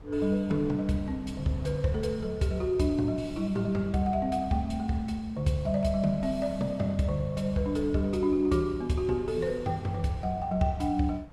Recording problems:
wind on the microphone; below 170 Hz, SNR 18 dB

